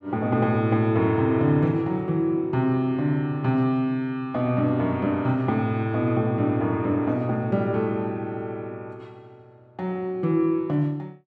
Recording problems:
none

